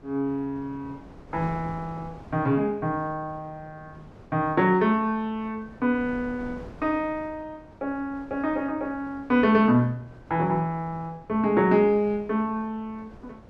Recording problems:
wind on the microphone; below 520 Hz, SNR 21 dB

